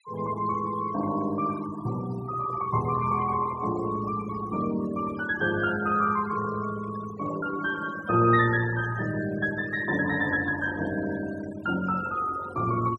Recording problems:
noise reduction artefacts; signal-to-artefact ratio 15 dB

